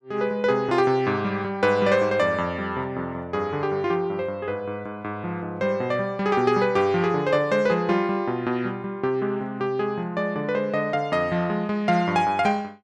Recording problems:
none

